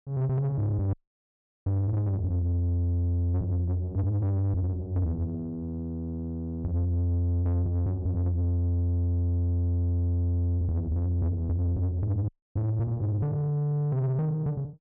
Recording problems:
distorted audio; soft clipping, signal-to-distortion ratio 11 dB
audio freezing; at 1 s for 0.5 s and at 12 s

